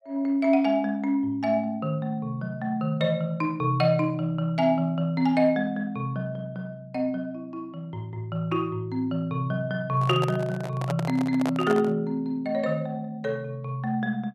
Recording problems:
microphone handling noise; from 10 to 12 s; peak -1 dB vs average level

